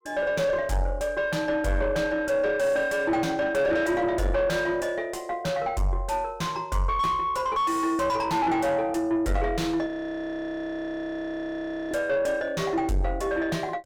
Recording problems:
distortion; soft clipping, signal-to-distortion ratio 6 dB
audio freezing; at 10 s for 2 s

